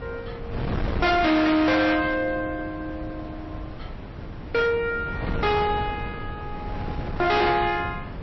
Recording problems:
lossy compression; MP3, log-spectral distance 2 dB, nothing above 5.7 kHz
distortion; hard clipping, signal-to-distortion ratio 6 dB
wind noise; below 410 Hz, SNR 10 dB

